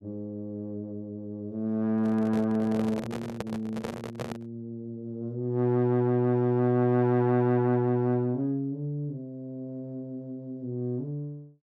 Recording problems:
microphone handling noise; from 2 to 4.5 s; peak -2 dB vs average level

